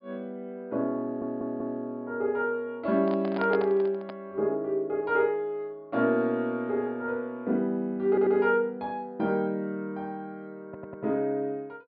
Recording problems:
treble cut off; nothing above 5 kHz
stutter; at 1 s, at 8 s and at 11 s
microphone handling noise; from 3 to 4 s; peak -2 dB vs average level

